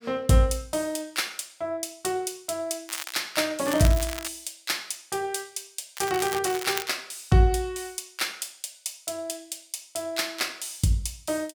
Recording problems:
crackling; at 3 s, at 3.5 s and at 6 s; loose cable, SNR 8 dB

